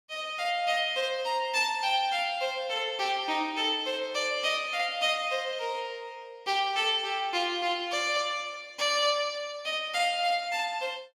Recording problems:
none

